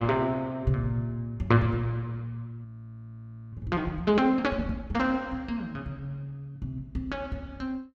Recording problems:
frozen audio; at 2.5 s for 1 s

